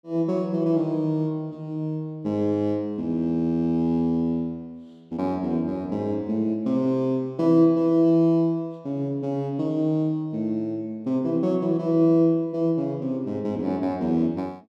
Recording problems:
none

